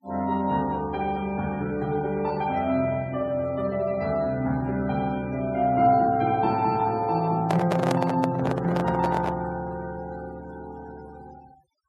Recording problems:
denoising artefacts; signal-to-artefact ratio 22 dB
handling noise; from 7.5 to 9.5 s; peak +2 dB vs average level

